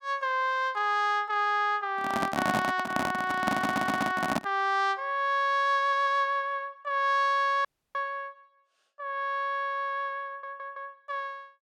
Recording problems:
handling noise; from 2 to 4.5 s; peak +3 dB vs average level
stutter; at 3.5 s, at 6 s and at 10 s
dropout; at 7.5 s

